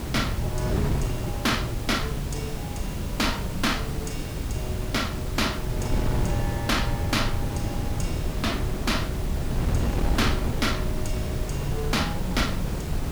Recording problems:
background hiss; slope +1 dB per octave, SNR 12 dB
wind on the microphone; below 210 Hz, SNR 0 dB

